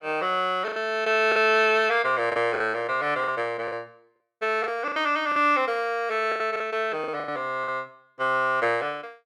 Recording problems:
lost packets; 9% of the sound replaced, filled with the last packet

